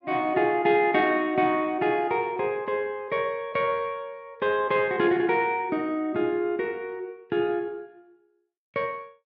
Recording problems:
none

